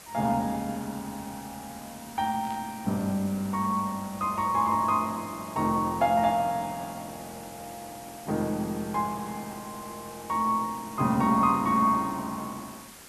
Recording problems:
background hiss; slope -2 dB per octave, SNR 17 dB
static burst; at 2.5 s; peak -16 dB vs average level

